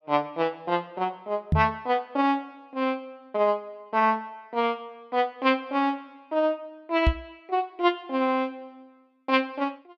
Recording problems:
knock on the microphone; at 1.5 s and at 7 s; peak +8 dB vs average level

